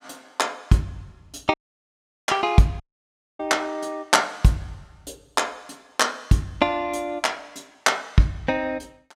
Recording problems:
audio cutting out; at 1.5 s for 0.5 s and at 3 s for 0.5 s

